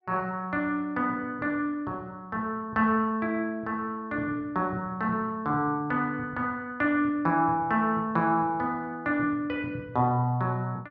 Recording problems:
none

